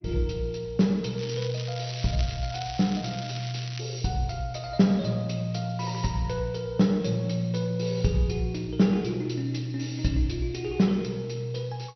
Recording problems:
codec artefacts; MP2, log-spectral distance 5 dB, nothing above 5.8 kHz
crackle; from 1 to 4 s; loose cable, SNR 12 dB

